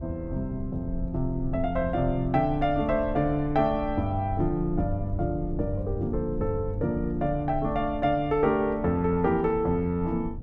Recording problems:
low-frequency rumble; below 88 Hz, SNR 11 dB

